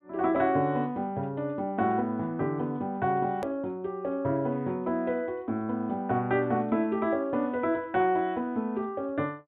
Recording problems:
treble cut off; nothing above 3.9 kHz
edit click; at 3.5 s

